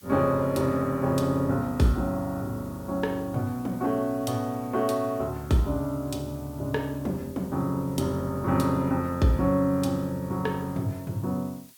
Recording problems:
background hiss; slope +5 dB per octave, SNR 24 dB

